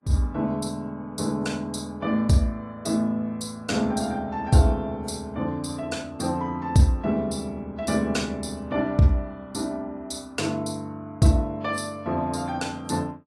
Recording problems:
lossy codec; AAC, log-spectral distance 2 dB

